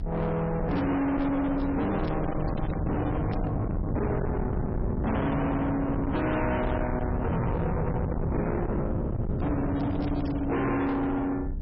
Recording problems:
lossy codec; MP3, log-spectral distance 2 dB, nothing above 5.3 kHz
distortion; soft clipping, signal-to-distortion ratio 6 dB
low-frequency rumble; below 260 Hz, SNR 8 dB
wind on the microphone; below 300 Hz, SNR 3 dB
crackling; from 0.5 to 3.5 s and from 9.5 to 11 s; loose cable, SNR 21 dB

